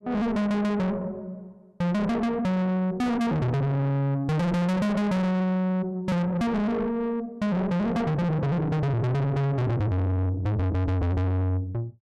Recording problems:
distorted audio; soft clipping, signal-to-distortion ratio 6 dB

